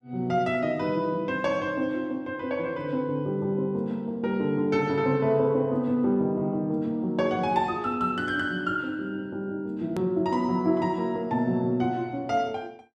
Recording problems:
click at an edit; at 10 s

